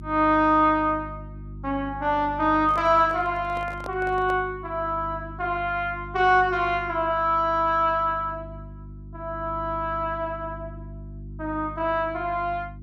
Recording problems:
hum; 50 Hz, harmonics up to 350 Hz, SNR 16 dB
microphone handling noise; from 2.5 to 4.5 s; peak -9 dB vs average level

